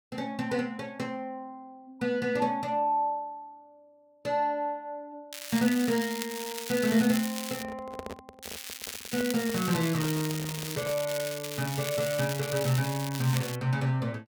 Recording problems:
crackling; from 5.5 to 7.5 s and from 8.5 to 14 s; loose cable, SNR 7 dB
microphone handling noise; from 7.5 to 11 s; peak -6 dB vs average level

